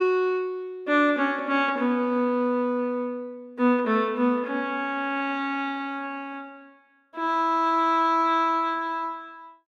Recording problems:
none

